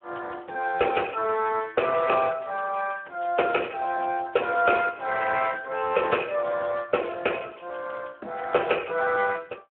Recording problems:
phone line; 300 Hz to 3.1 kHz, Speex

